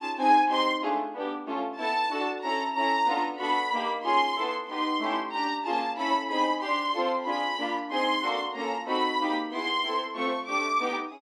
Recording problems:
none

